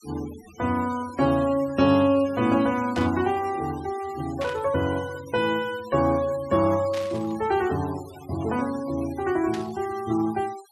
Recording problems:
denoising artefacts; signal-to-artefact ratio 19 dB
burst of static; 4 times, first at 3 s; peak -7 dB vs average level

